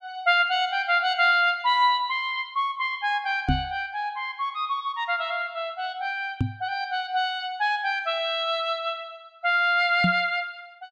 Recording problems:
microphone bump; at 3.5 s, at 6.5 s and at 10 s; peak +4 dB vs average level

